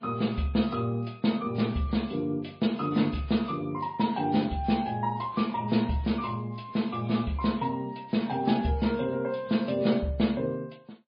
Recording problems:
codec artefacts; MP3, log-spectral distance 3 dB, nothing above 4.2 kHz

